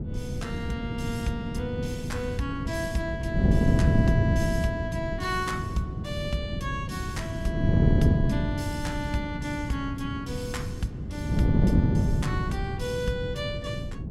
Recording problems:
wind noise; below 220 Hz, SNR -4 dB

